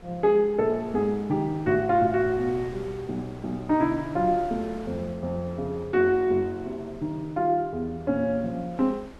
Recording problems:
wind on the microphone; below 900 Hz, SNR 20 dB

